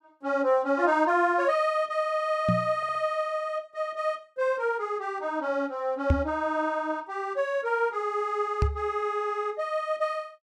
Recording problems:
microphone thump; at 2.5 s, at 6 s and at 8.5 s; peak +8 dB vs average level
audio stuttering; at 3 s

